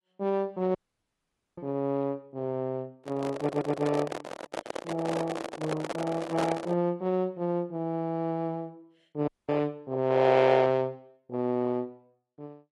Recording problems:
lossy codec; AAC, log-spectral distance 2 dB
dropout; at 1 s for 1 s and at 9.5 s
microphone handling noise; from 3 to 7 s; peak +3 dB vs average level
stutter; at 3.5 s

